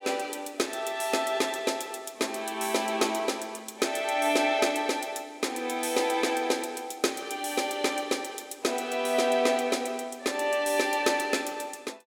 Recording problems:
none

